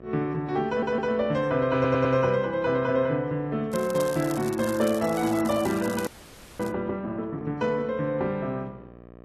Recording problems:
lossy compression; AAC, log-spectral distance 3 dB
hum; 60 Hz, harmonics up to 1.4 kHz, SNR 22 dB
audio stuttering; at 0.5 s and at 1.5 s
crackle; from 3.5 to 6.5 s; loose cable, SNR 16 dB
frozen audio; at 6 s for 0.5 s

